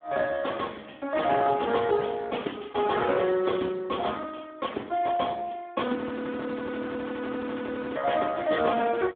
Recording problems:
phone line; 240 Hz to 3.5 kHz, Speex
audio freezing; at 6 s for 2 s

